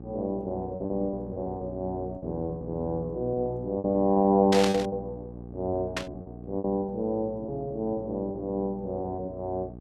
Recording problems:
electrical hum; 60 Hz, harmonics up to 840 Hz, SNR 13 dB
packet loss; 9% of the sound replaced, filled with repeated pitch periods
static burst; at 4.5 s and at 6 s; peak +3 dB vs average level

